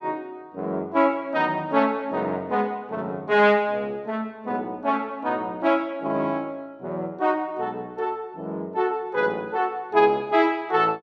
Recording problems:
none

